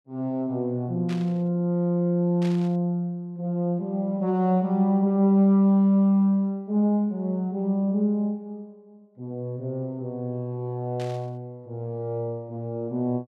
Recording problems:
burst of static; at 1 s, at 2.5 s and at 11 s; peak -11 dB vs average level

